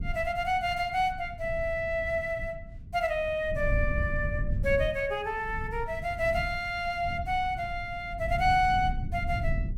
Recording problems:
rumble; below 110 Hz, SNR 8 dB

